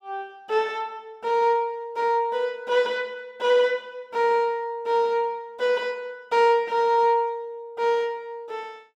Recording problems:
none

